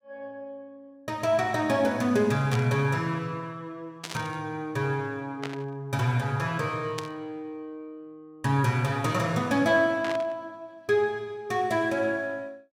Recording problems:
static burst; 5 times, first at 2.5 s; peak -4 dB vs average level

